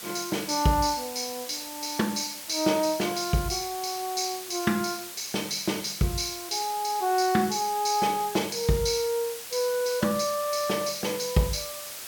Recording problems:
background hiss; slope +1 dB per octave, SNR 10 dB

